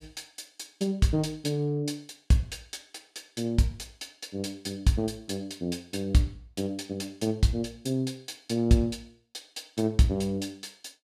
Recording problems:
none

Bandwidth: 14.5 kHz